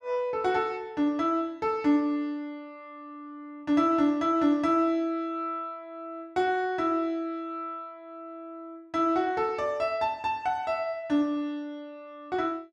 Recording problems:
none

